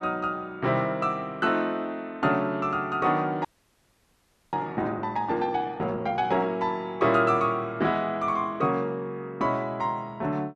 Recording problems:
frozen audio; at 3.5 s for 1 s

